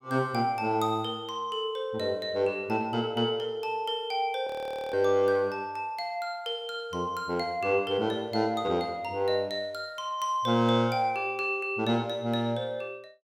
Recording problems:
frozen audio; at 4.5 s

